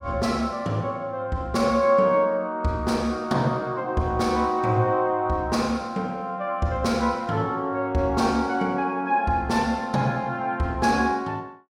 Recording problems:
none

